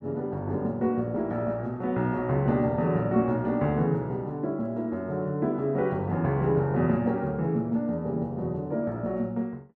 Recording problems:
none

